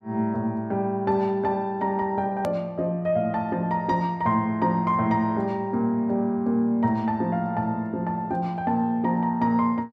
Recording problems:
edit click; at 2.5 s

